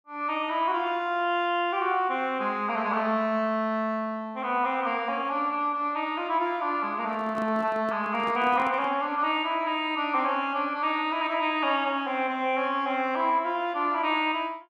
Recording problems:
handling noise; from 7 to 9 s; peak -10 dB vs average level

